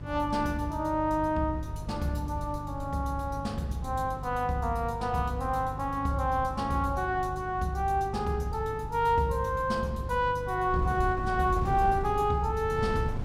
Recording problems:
hum; 50 Hz, harmonics up to 450 Hz, SNR 12 dB
wind noise; below 160 Hz, SNR 11 dB

